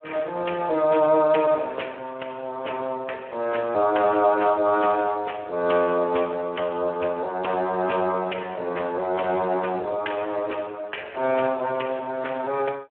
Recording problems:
phone line; 320 Hz to 3.2 kHz, Speex

